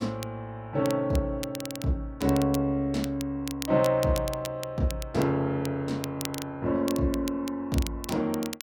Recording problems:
crackle; vinyl, SNR 13 dB

